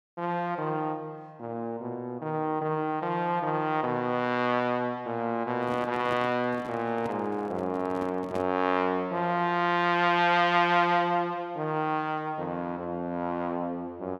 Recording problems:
microphone handling noise; from 5.5 to 8.5 s; peak -5 dB vs average level

